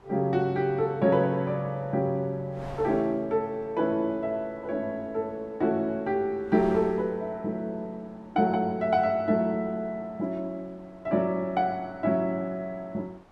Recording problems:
wind on the microphone; below 1 kHz, SNR 23 dB

